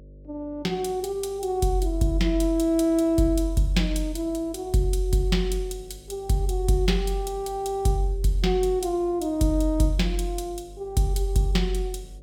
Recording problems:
electrical hum; 50 Hz, harmonics up to 600 Hz, SNR 23 dB

